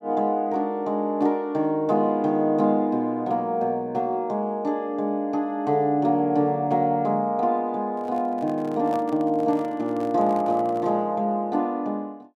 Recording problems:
microphone handling noise; from 8 to 11 s; peak -10 dB vs average level

